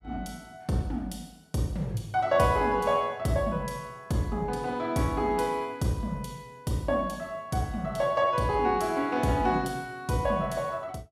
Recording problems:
none

